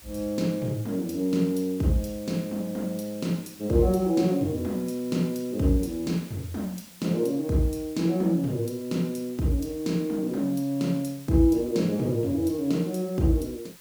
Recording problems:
background hiss; slope 0 dB per octave, SNR 21 dB

